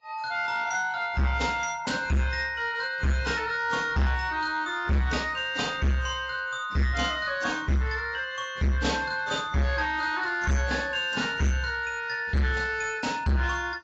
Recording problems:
lossy compression; AAC, log-spectral distance 3 dB
distortion; soft clipping, signal-to-distortion ratio 6 dB

